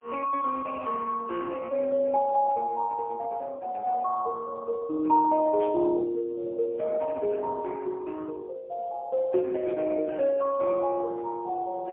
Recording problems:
telephone audio; 280 Hz to 2.6 kHz, AMR-NB, then MP3
static burst; at 5.5 s; peak -17 dB vs average level

